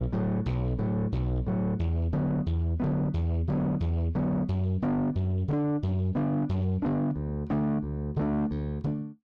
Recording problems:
distortion; soft clipping, signal-to-distortion ratio 7 dB

